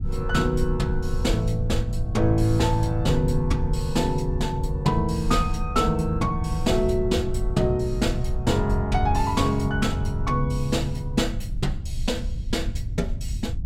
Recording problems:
rumble; below 90 Hz, SNR 5 dB

